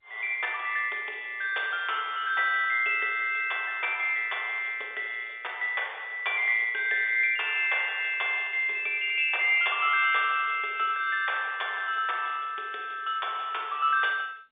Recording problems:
phone line; 320 Hz to 3.6 kHz, G.711

